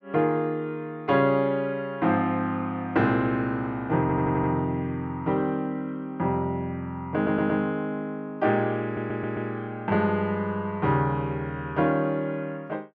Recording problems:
stutter; at 4 s, at 7 s and at 9 s

